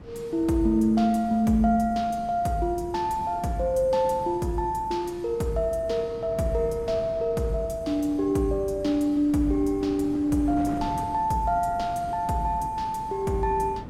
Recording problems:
wind noise; below 360 Hz, SNR 16 dB

